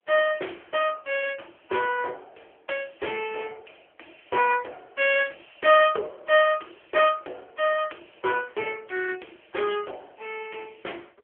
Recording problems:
telephone audio; 340 Hz to 3.3 kHz, AMR-NB

